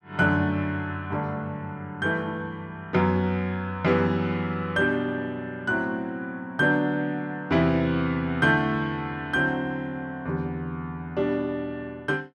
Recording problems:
none

